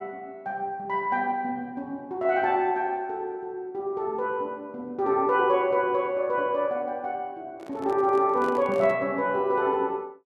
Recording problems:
microphone handling noise; from 7.5 to 9 s; peak -8 dB vs average level

